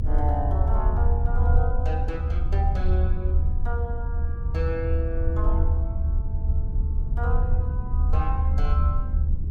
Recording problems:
low-frequency rumble; below 74 Hz, SNR -9 dB

